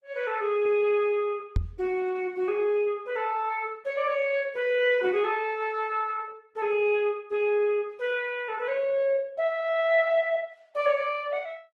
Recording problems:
lossy compression; Opus, log-spectral distance 2 dB
microphone bump; at 1.5 s; peak +3 dB vs average level

